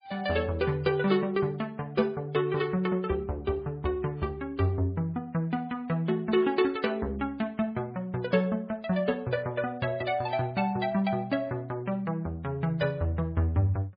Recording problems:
lossy compression; MP3, log-spectral distance 2 dB, nothing above 4.4 kHz

